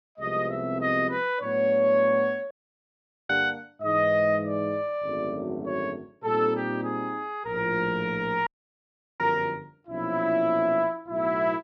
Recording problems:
audio cutting out; at 2.5 s for 1 s and at 8.5 s for 0.5 s

